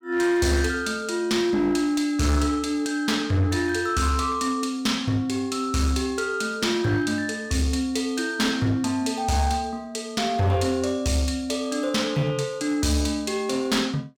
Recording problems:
distortion; hard clipping, uneven, signal-to-distortion ratio 12 dB

